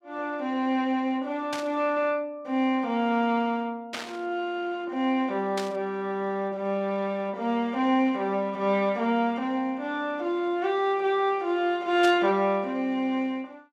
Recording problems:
burst of static; 4 times, first at 1.5 s; peak -3 dB vs average level

